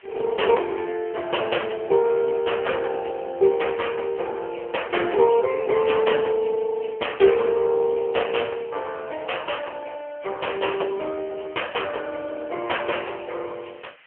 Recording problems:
phone line; 320 Hz to 3.2 kHz, AMR-NB
background hiss; SNR 27 dB

